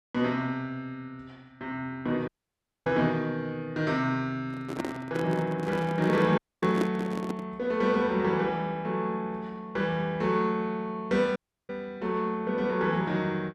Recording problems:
dropout; at 2.5 s for 0.5 s, at 6.5 s and at 11 s
handling noise; from 4.5 to 7.5 s; peak +4 dB vs average level

